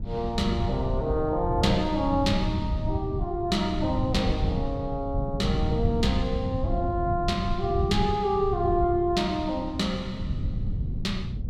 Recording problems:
wind noise; below 130 Hz, SNR 4 dB

